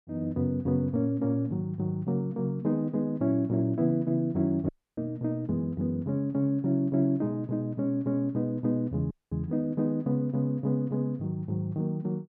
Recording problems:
dropout; at 4.5 s and at 9 s

